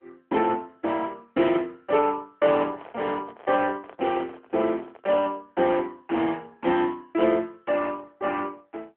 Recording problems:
telephone audio; 240 Hz to 3.2 kHz, AMR-NB
handling noise; from 2.5 to 5.5 s; peak -13 dB vs average level

